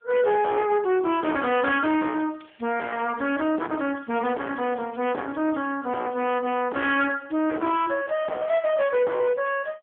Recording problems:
phone line; 260 Hz to 3.5 kHz, AMR-NB
distortion; hard clipping, signal-to-distortion ratio 9 dB

